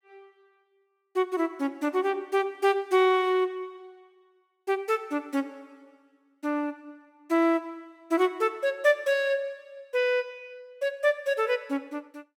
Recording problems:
none

